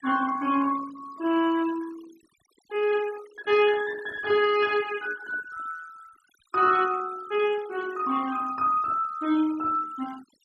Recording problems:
denoising artefacts; signal-to-artefact ratio 20 dB

